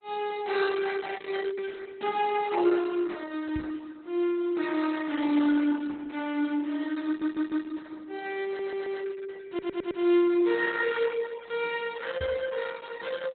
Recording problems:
codec artefacts; Opus, log-spectral distance 4 dB, nothing above 4 kHz
microphone thump; at 3.5 s and at 12 s; peak -3 dB vs average level
audio stuttering; at 7 s, at 8.5 s and at 9.5 s

